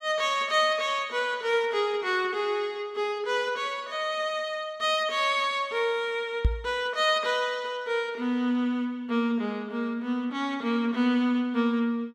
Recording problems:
microphone thump; at 6.5 s; peak +6 dB vs average level

